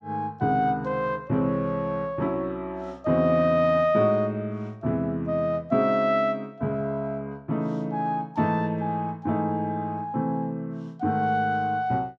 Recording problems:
none

